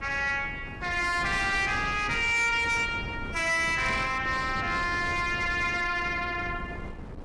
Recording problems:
lossy compression; AAC, log-spectral distance 2 dB, nothing above 10.7 kHz
distorted audio; soft clipping, signal-to-distortion ratio 10 dB
wind noise; below 380 Hz, SNR 13 dB

